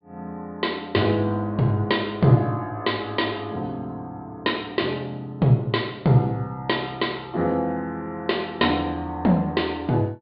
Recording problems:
treble cut off; nothing above 4.6 kHz

